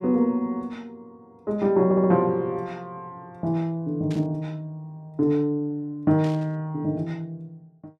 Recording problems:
audio stuttering; at 2 s
static burst; at 4 s and at 6 s; peak -13 dB vs average level

